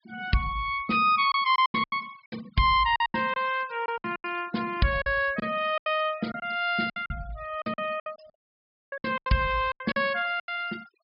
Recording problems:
treble missing; nothing above 5.5 kHz
noise reduction artefacts; signal-to-artefact ratio 21 dB
packet loss; 14% of the sound replaced, filled with silence
dropout; at 8.5 s for 0.5 s

